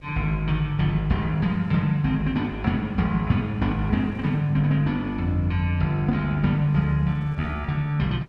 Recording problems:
wind on the microphone; below 360 Hz, SNR 27 dB

